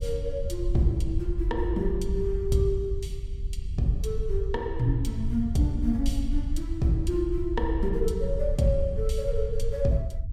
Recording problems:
low-frequency rumble; below 64 Hz, SNR 4 dB

